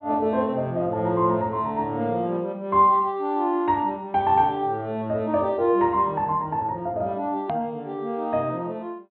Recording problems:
low-pass filter; nothing above 4.2 kHz
hard cut with a click; at 7.5 s

